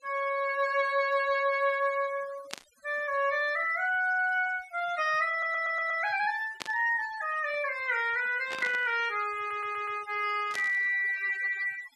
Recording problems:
noise reduction artefacts; signal-to-artefact ratio 18 dB
burst of static; 4 times, first at 2.5 s; peak -3 dB vs average level
audio stuttering; at 5.5 s and at 9.5 s

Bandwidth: 13 kHz